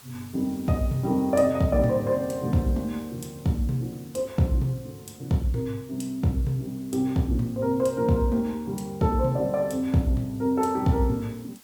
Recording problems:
background hiss; slope -1 dB per octave, SNR 24 dB

